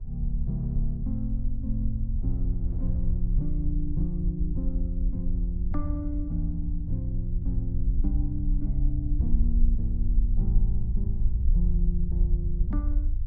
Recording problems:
low-frequency rumble; below 54 Hz, SNR -4 dB
wind on the microphone; below 340 Hz, SNR 26 dB

